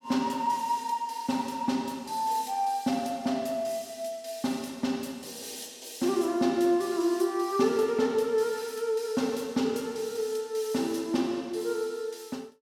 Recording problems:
none

